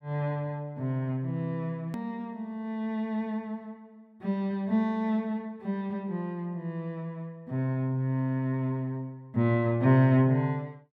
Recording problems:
click at an edit; at 2 s

